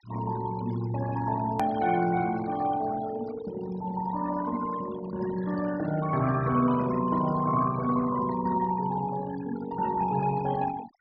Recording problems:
treble cut off; nothing above 5.5 kHz
denoising artefacts; signal-to-artefact ratio 14 dB
edit click; at 1.5 s

